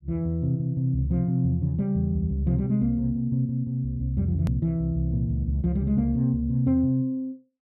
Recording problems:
hard cut with a click; at 4.5 s

